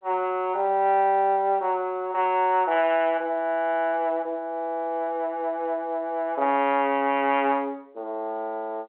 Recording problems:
telephone audio; 240 Hz to 3.6 kHz, G.711

